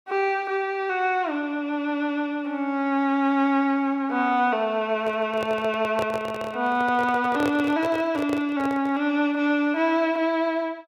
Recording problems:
microphone handling noise; from 5 to 9 s; peak -2 dB vs average level

